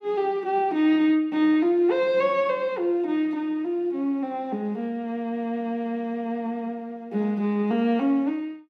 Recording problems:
none

